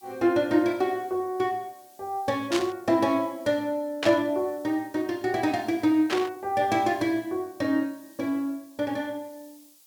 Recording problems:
background hiss; SNR 27 dB
static burst; at 2.5 s, at 4 s and at 6 s; peak +1 dB vs average level

